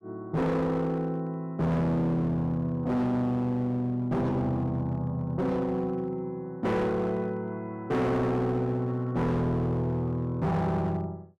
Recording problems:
distorted audio; hard clipping, signal-to-distortion ratio 7 dB

